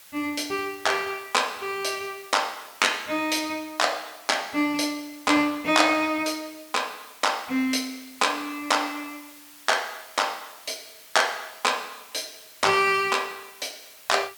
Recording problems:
background hiss; slope +2 dB per octave, SNR 21 dB

